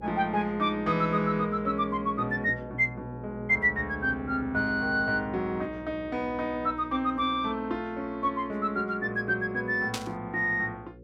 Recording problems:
hum; 60 Hz, harmonics up to 540 Hz, SNR 19 dB
static burst; at 10 s; peak 0 dB vs average level

